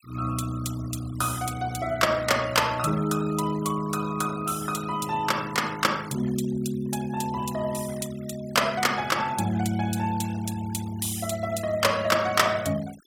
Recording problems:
denoising artefacts; signal-to-artefact ratio 18 dB

